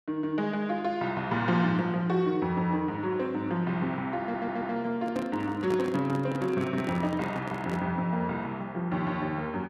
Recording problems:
stutter; at 4 s
microphone handling noise; from 5 to 8 s; peak -2 dB vs average level

